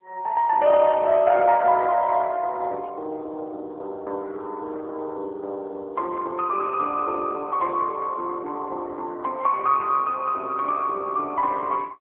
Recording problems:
phone line; 300 Hz to 2.1 kHz, AMR-NB

